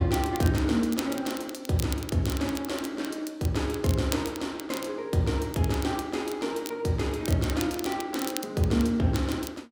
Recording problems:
crackle; vinyl, SNR 13 dB

